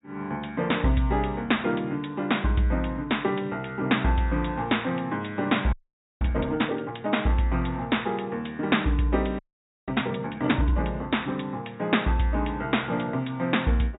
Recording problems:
treble cut off; nothing above 4 kHz
audio freezing; at 5.5 s and at 9.5 s

